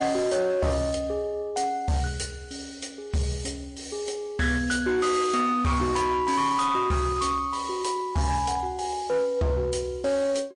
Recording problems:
lossy compression; MP3, log-spectral distance 3 dB, nothing above 9 kHz
distorted audio; hard clipping, uneven, signal-to-distortion ratio 12 dB

